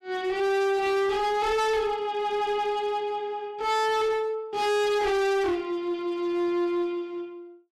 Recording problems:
distorted audio; hard clipping, uneven, signal-to-distortion ratio 6 dB

